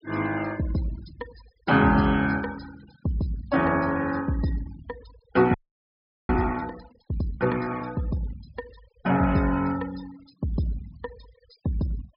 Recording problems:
treble cut off; nothing above 5.5 kHz
denoising artefacts; signal-to-artefact ratio 21 dB
frozen audio; at 5.5 s for 1 s

